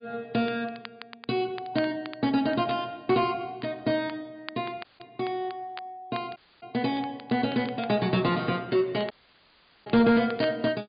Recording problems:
low-pass filter; nothing above 4.8 kHz
codec artefacts; MP3, log-spectral distance 2 dB
distortion; soft clipping, signal-to-distortion ratio 12 dB
crackling; vinyl, SNR 20 dB
audio cutting out; at 5 s, at 6.5 s and at 9 s for 1 s

